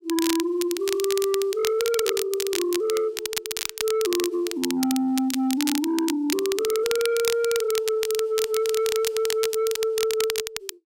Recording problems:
distorted audio; soft clipping, signal-to-distortion ratio 12 dB
crackle; vinyl, SNR 6 dB

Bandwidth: 16 kHz